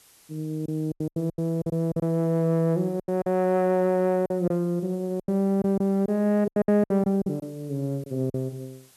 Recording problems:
hiss; slope 0 dB per octave, SNR 29 dB
packet loss; 12% of the sound replaced, filled with silence

